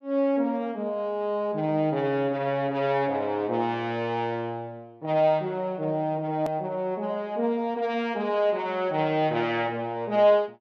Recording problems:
click at an edit; at 6.5 s

